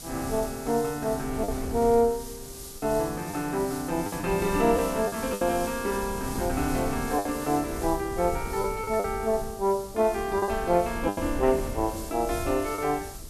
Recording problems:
background hiss; SNR 14 dB
wind noise; below 180 Hz, SNR 13 dB
packet loss; 5% of the sound replaced, filled with the last packet

